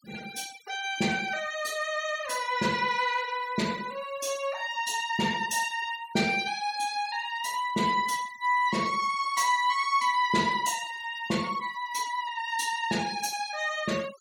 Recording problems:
denoising artefacts; signal-to-artefact ratio 17 dB

